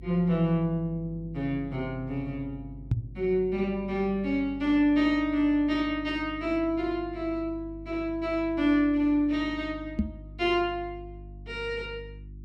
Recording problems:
hum; 50 Hz, harmonics up to 350 Hz, SNR 17 dB
microphone bump; at 3 s and at 10 s; peak +5 dB vs average level

